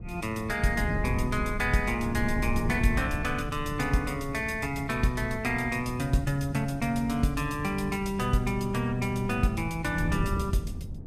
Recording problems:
wind on the microphone; below 160 Hz, SNR 7 dB

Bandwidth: 14.5 kHz